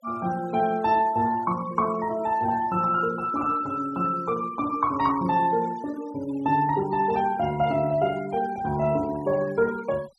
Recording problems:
denoising artefacts; signal-to-artefact ratio 20 dB

